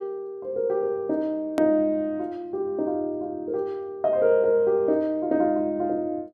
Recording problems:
edit click; at 1.5 s

